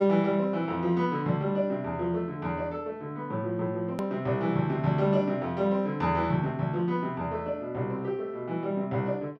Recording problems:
hard cut with a click; at 4 s

